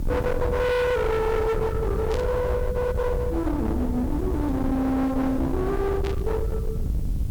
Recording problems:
distorted audio; hard clipping, signal-to-distortion ratio 7 dB
hiss; SNR 28 dB
low-frequency rumble; below 310 Hz, SNR 4 dB
burst of static; at 2 s and at 6 s; peak -9 dB vs average level

